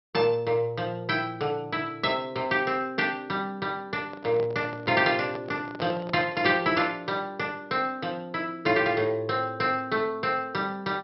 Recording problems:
treble missing; nothing above 5.6 kHz
microphone handling noise; from 4 to 7 s; peak -5 dB vs average level

